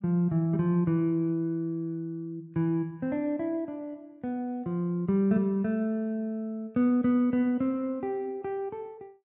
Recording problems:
none

